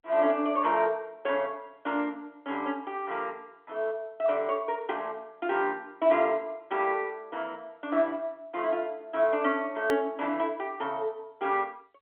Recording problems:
telephone audio; 240 Hz to 3.8 kHz, G.711
hard cut with a click; at 10 s

